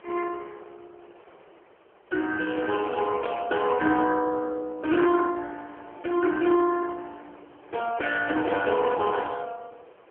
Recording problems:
phone line; 300 Hz to 2.9 kHz, AMR-NB
wind on the microphone; below 1.2 kHz, SNR 25 dB

